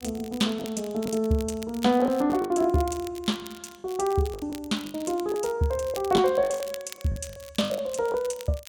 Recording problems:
crackling; vinyl, SNR 18 dB
lost packets; 10% of the sound replaced, filled with the last packet

